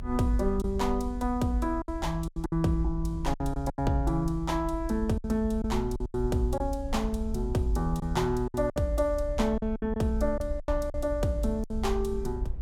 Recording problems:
rumble; below 66 Hz, SNR 7 dB
packet loss; 8% of the sound replaced, filled with silence

